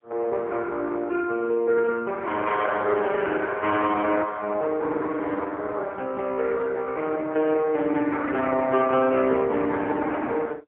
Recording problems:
telephone audio; 280 Hz to 3.4 kHz, AMR-NB, then MP3

